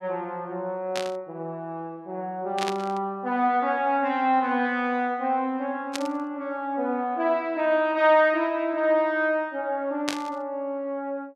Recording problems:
static burst; 4 times, first at 1 s; peak +1 dB vs average level

